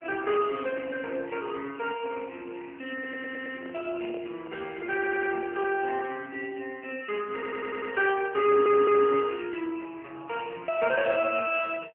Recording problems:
telephone audio; 240 Hz to 2.8 kHz, AMR-NB
microphone handling noise; from 3 to 6 s; peak -11 dB vs average level
audio stuttering; 4 times, first at 3 s

